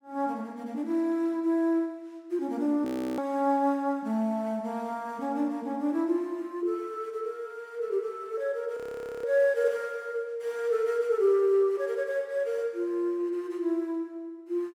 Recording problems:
frozen audio; at 3 s and at 9 s

